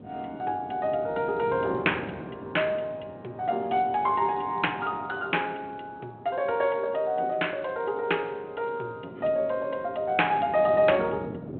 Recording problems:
phone line; 240 Hz to 3.3 kHz, G.726
wind noise; below 400 Hz, SNR 16 dB

